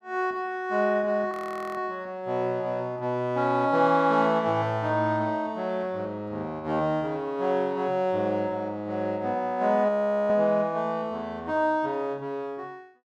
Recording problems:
frozen audio; at 1.5 s and at 10 s

